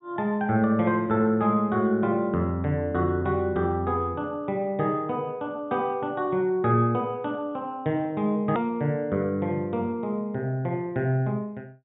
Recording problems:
treble cut off; nothing above 4 kHz
click at an edit; at 8.5 s

